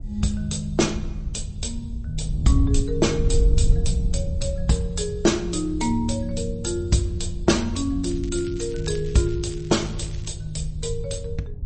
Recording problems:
codec artefacts; MP3, log-spectral distance 4 dB, nothing above 8.2 kHz
wind on the microphone; below 82 Hz, SNR 4 dB
crackle; from 8 to 10 s; loose cable, SNR 20 dB

